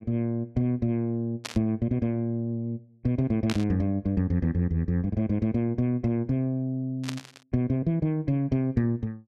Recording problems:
burst of static; at 1.5 s, at 3.5 s and at 7 s; peak -1 dB vs average level

